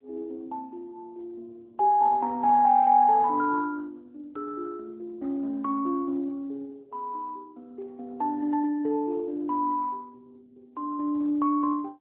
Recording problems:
telephone audio; 260 Hz to 2.2 kHz, AMR-NB

